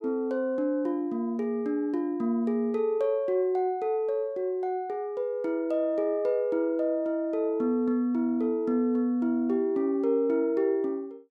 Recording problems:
none

